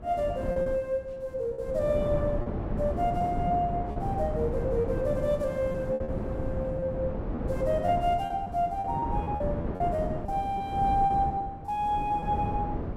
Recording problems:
wind noise; below 360 Hz, SNR 4 dB
lost packets; 8% of the sound replaced, filled with repeated pitch periods

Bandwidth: 16 kHz